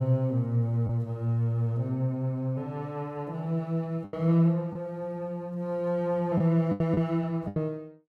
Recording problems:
packet loss; 4% of the sound replaced, filled with the last packet

